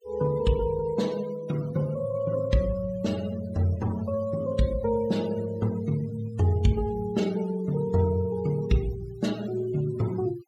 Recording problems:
denoising artefacts; signal-to-artefact ratio 19 dB

